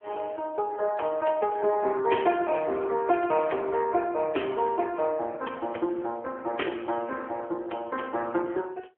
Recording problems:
phone line; 280 Hz to 3.2 kHz, AMR-NB

